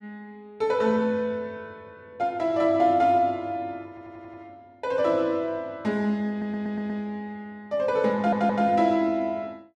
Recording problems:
audio stuttering; at 4 s, at 6.5 s and at 8 s

